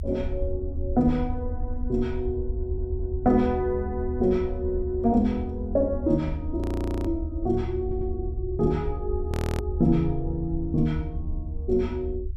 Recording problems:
low-frequency rumble; below 80 Hz, SNR 6 dB
audio stuttering; at 2.5 s and at 8 s
frozen audio; at 6.5 s and at 9.5 s

